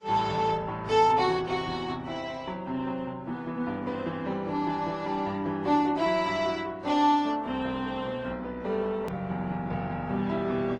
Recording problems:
lossy compression; Opus, then AAC, log-spectral distance 3 dB
click at an edit; at 9 s

